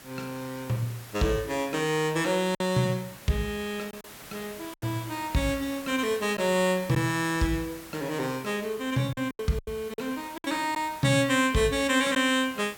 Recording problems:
background hiss; slope -2 dB per octave, SNR 17 dB
lost packets; 4% of the sound replaced, filled with silence

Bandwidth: 17 kHz